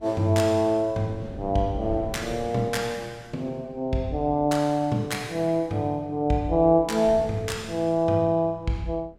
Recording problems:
wind noise; below 250 Hz, SNR 16 dB

